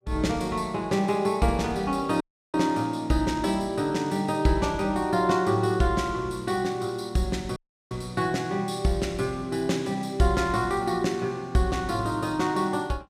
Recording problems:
dropout; at 2 s and at 7.5 s

